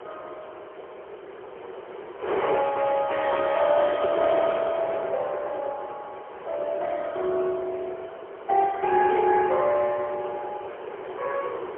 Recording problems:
telephone audio; 320 Hz to 3.4 kHz, AMR-NB, then MP3
background hiss; SNR 25 dB
wind noise; below 920 Hz, SNR 11 dB

